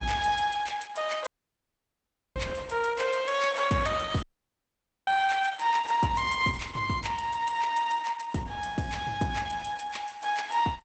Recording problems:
codec artefacts; Opus, log-spectral distance 5 dB, nothing above 8 kHz
audio cutting out; at 1.5 s for 1 s and at 4 s for 1 s

